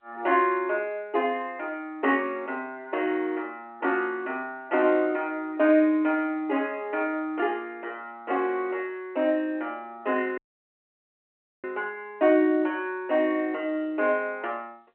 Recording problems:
phone line; 240 Hz to 3.1 kHz, G.711
audio cutting out; at 10 s for 1.5 s

